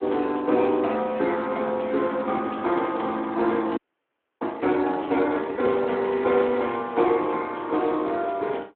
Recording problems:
telephone audio; 240 Hz to 3.6 kHz, Speex
frozen audio; at 4 s for 0.5 s

